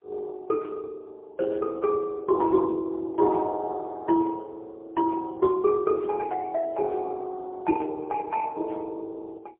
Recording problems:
telephone audio; 280 Hz to 2.3 kHz, AMR-NB, then MP3

